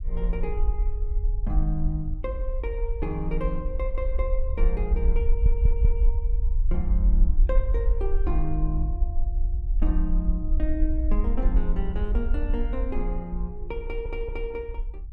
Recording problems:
rumble; below 52 Hz, SNR -6 dB
stutter; at 5.5 s and at 14 s

